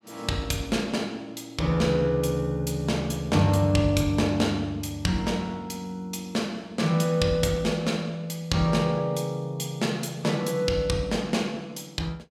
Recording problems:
none

